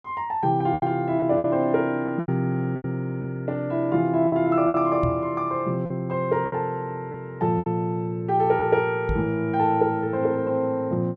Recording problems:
lost packets; 6% of the sound replaced, filled with repeated pitch periods
microphone bump; at 5 s and at 9 s; peak 0 dB vs average level

